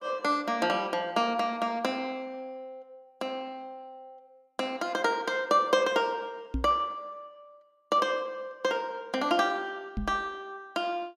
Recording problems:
microphone bump; at 6.5 s and at 10 s; peak +1 dB vs average level

